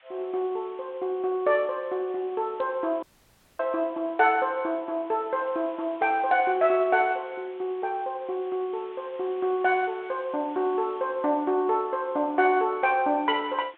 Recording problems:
phone line; 240 Hz to 3.7 kHz, G.726
background hiss; SNR 28 dB
audio cutting out; at 3 s for 0.5 s

